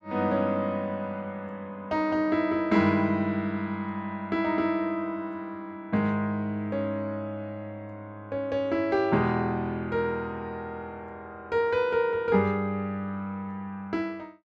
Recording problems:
none

